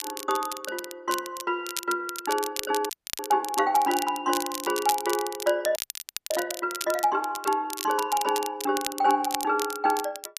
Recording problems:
crackle; vinyl, SNR 8 dB
frozen audio; at 3 s and at 6 s for 0.5 s

